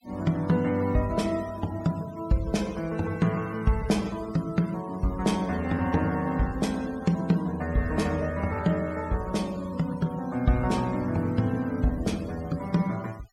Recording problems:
noise reduction artefacts; signal-to-artefact ratio 20 dB

